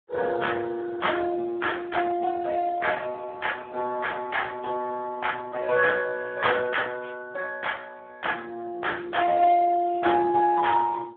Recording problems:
phone line; 240 Hz to 3.5 kHz, Speex

